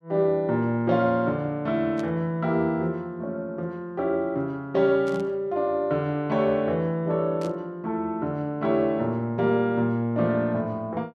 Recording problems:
static burst; at 2 s, at 5 s and at 7.5 s; peak -14 dB vs average level

